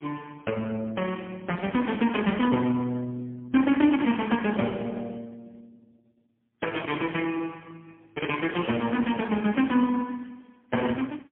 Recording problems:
phone line; 170 Hz to 3.4 kHz, AMR-NB, then MP3

